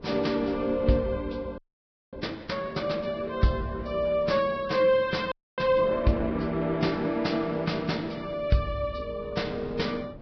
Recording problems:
lossy compression; Vorbis, log-spectral distance 3 dB, nothing above 5.5 kHz
wind on the microphone; below 410 Hz, SNR 19 dB
audio freezing; at 1.5 s for 0.5 s and at 5.5 s

